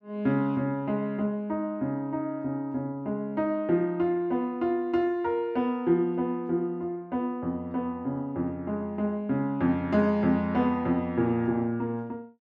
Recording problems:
none

